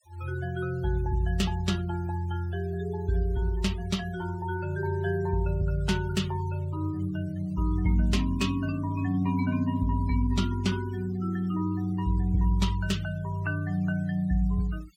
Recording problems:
noise reduction artefacts; signal-to-artefact ratio 21 dB

